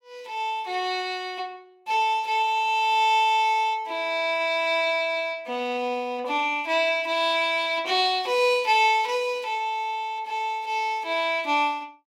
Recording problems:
none

